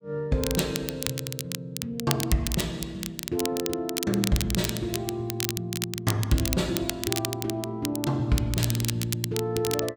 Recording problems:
crackle; vinyl, SNR 4 dB

